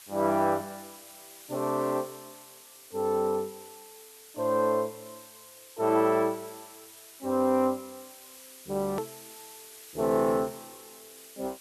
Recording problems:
background hiss; slope +2 dB per octave, SNR 19 dB
hard cut with a click; at 9 s

